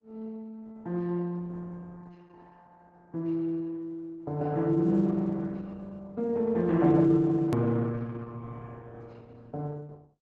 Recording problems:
lossy codec; Opus, log-spectral distance 2 dB, nothing above 13.1 kHz
hard cut with a click; at 7.5 s

